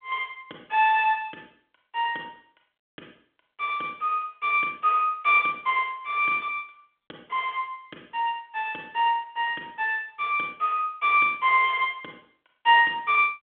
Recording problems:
telephone audio; 280 Hz to 3.4 kHz, G.726

